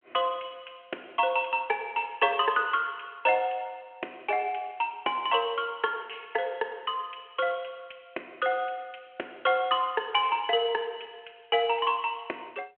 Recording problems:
phone line; 300 Hz to 3.2 kHz, G.726

